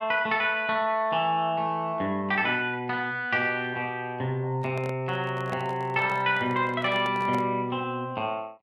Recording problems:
microphone handling noise; from 4.5 to 7.5 s; peak -6 dB vs average level

